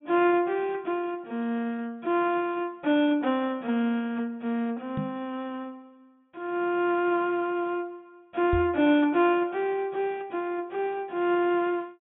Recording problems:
treble cut off; nothing above 4 kHz
microphone bump; at 5 s and at 8.5 s; peak 0 dB vs average level

